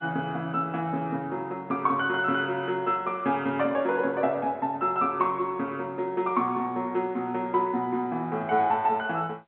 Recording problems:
phone line; 220 Hz to 3.7 kHz, G.711

